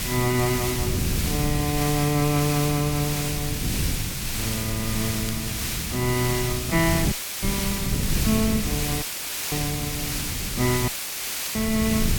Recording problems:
background hiss; slope +1 dB per octave, SNR 1 dB
wind on the microphone; below 180 Hz, SNR 5 dB
crackling; vinyl, SNR 21 dB
dropout; at 7 s, at 9 s for 0.5 s and at 11 s for 0.5 s; filled with static

